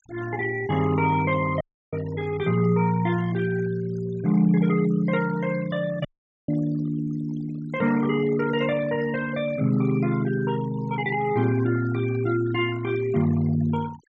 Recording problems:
treble missing; nothing above 8 kHz
noise reduction artefacts; signal-to-artefact ratio 18 dB
audio cutting out; at 1.5 s and at 6 s

